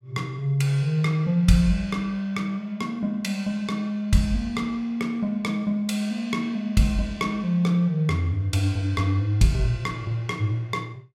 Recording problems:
none

